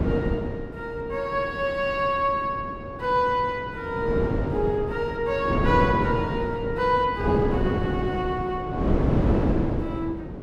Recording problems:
wind noise; below 400 Hz, SNR 1 dB

